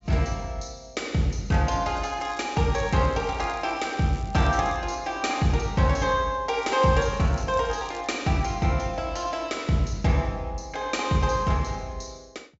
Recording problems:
low-pass filter; nothing above 7.6 kHz
crackling; from 2 to 5 s and from 6.5 to 8 s; loose cable, SNR 24 dB

